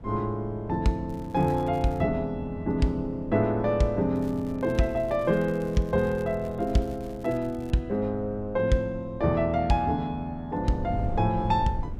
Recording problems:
wind noise; below 130 Hz, SNR 14 dB
crackle; at 1 s and from 4 to 7.5 s; loose cable, SNR 28 dB

